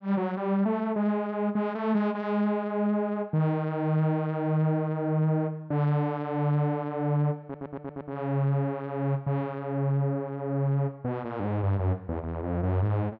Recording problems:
audio stuttering; at 7.5 s

